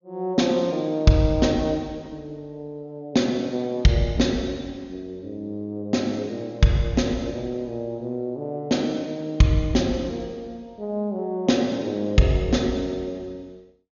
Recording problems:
low-pass filter; nothing above 6.8 kHz

